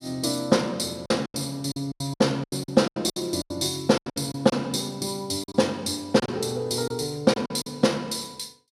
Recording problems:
lost packets; 12% of the sound replaced, filled with silence

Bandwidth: 15 kHz